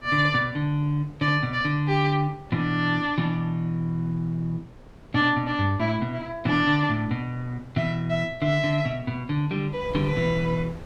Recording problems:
wind on the microphone; below 410 Hz, SNR 20 dB

